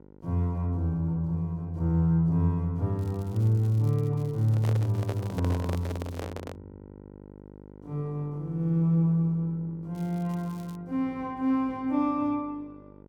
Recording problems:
hum; 50 Hz, harmonics up to 1.1 kHz, SNR 22 dB
crackling; from 3 to 6 s and at 10 s; loose cable, SNR 28 dB
microphone handling noise; from 4.5 to 6.5 s; peak -3 dB vs average level

